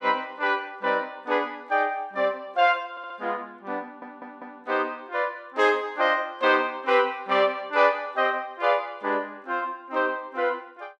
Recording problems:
audio stuttering; at 3 s and at 4 s

